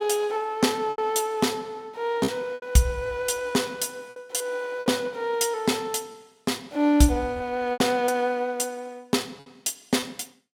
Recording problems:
packet loss; 6% of the sound replaced, filled with repeated pitch periods

